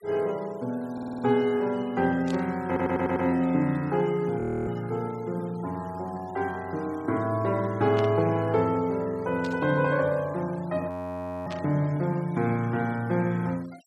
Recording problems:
noise reduction artefacts; signal-to-artefact ratio 24 dB
audio stuttering; at 1 s and at 2.5 s
burst of static; 4 times, first at 2.5 s; peak -8 dB vs average level
audio freezing; at 4.5 s and at 11 s for 0.5 s

